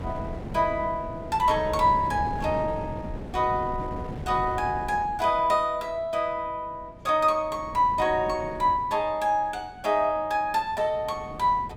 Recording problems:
wind noise; below 350 Hz, SNR 12 dB

